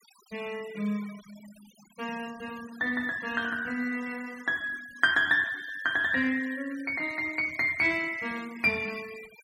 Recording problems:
denoising artefacts; signal-to-artefact ratio 20 dB

